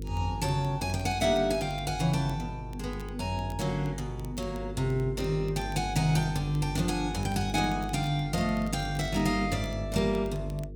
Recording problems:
electrical hum; 50 Hz, harmonics up to 500 Hz, SNR 9 dB
crackling; vinyl, SNR 26 dB

